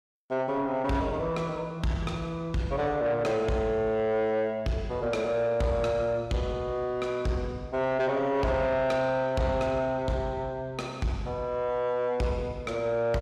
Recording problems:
distorted audio; soft clipping, signal-to-distortion ratio 12 dB

